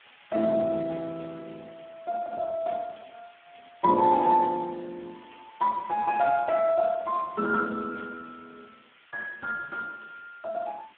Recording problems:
telephone audio; 260 Hz to 3.6 kHz, Speex
background hiss; SNR 27 dB

